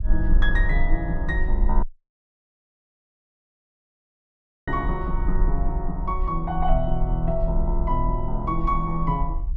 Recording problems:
low-frequency rumble; below 46 Hz, strongest tone 20 Hz, SNR 0 dB
dropout; at 2 s for 3 s

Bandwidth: 12 kHz